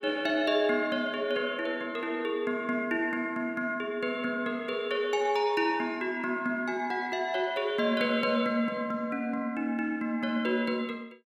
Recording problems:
none

